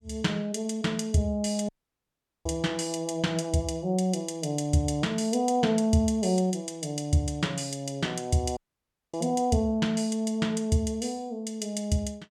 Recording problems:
audio cutting out; at 1.5 s for 1 s and at 8.5 s for 0.5 s

